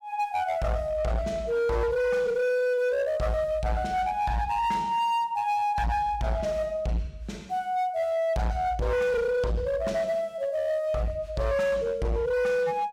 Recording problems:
distortion; hard clipping, uneven, signal-to-distortion ratio 8 dB

